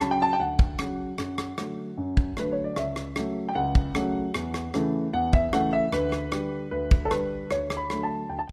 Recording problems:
lossy compression; AAC, log-spectral distance 2 dB

